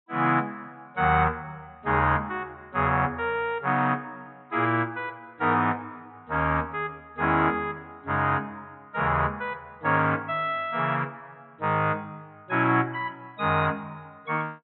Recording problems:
low-pass filter; nothing above 3.9 kHz

